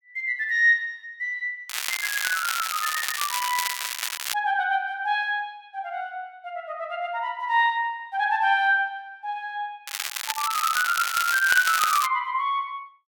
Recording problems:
crackling; from 1.5 to 4.5 s and from 10 to 12 s; loose cable, SNR 3 dB

